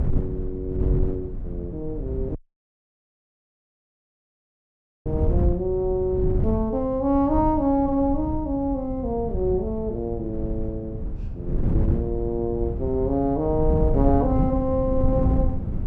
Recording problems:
wind noise; below 130 Hz, SNR 3 dB
audio cutting out; at 2.5 s for 2.5 s

